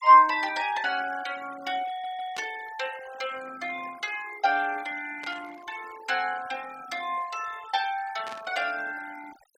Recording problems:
noise reduction artefacts; signal-to-artefact ratio 17 dB
audio stuttering; at 2 s
static burst; at 2.5 s, at 5 s and at 8.5 s; peak -8 dB vs average level

